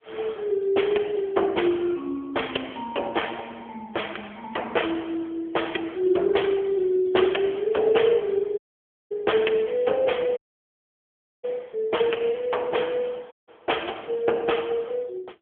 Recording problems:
phone line; 280 Hz to 3.3 kHz, AMR-NB
audio cutting out; at 8.5 s for 0.5 s, at 10 s for 1 s and at 13 s

